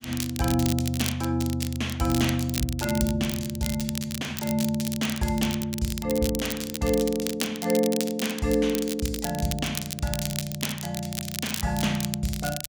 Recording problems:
crackle; vinyl, SNR 7 dB

